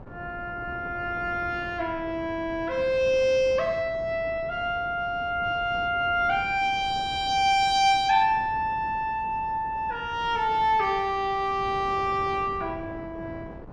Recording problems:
wind noise; below 470 Hz, SNR 17 dB

